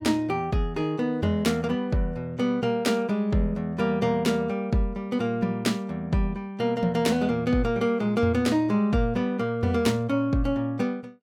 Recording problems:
none

